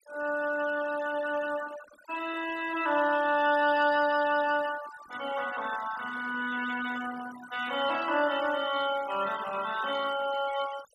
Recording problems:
noise reduction artefacts; signal-to-artefact ratio 15 dB

